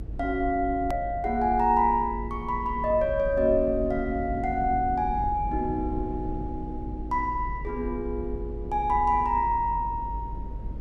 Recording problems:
low-frequency rumble; below 100 Hz, strongest tone 50 Hz, SNR 10 dB
click at an edit; at 1 s

